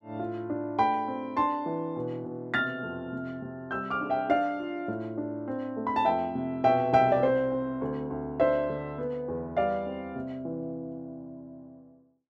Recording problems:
none

